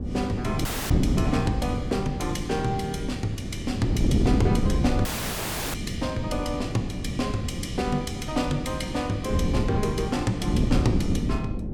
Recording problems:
wind noise; below 240 Hz, SNR -1 dB
audio cutting out; at 0.5 s and at 5 s for 0.5 s

